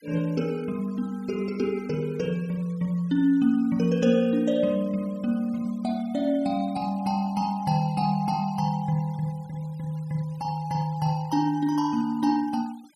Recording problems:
denoising artefacts; signal-to-artefact ratio 27 dB

